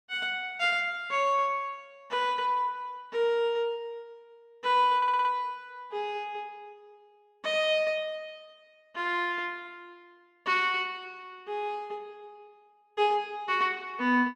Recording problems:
audio stuttering; at 5 s

